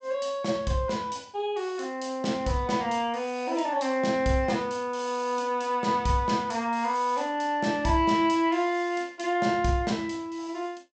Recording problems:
treble missing; nothing above 8 kHz

